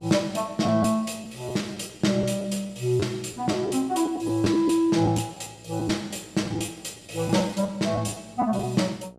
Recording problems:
hum; 60 Hz, harmonics up to 1.4 kHz, SNR 27 dB
lost packets; 7% of the sound replaced, filled with the last packet

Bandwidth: 14.5 kHz